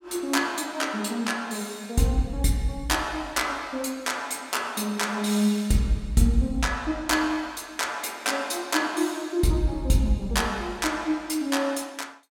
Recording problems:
none

